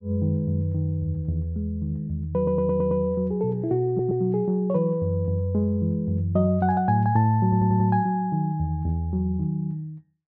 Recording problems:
audio stuttering; at 2.5 s, at 4 s and at 7.5 s

